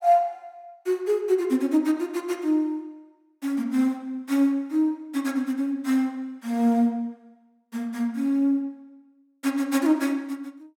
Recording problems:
none

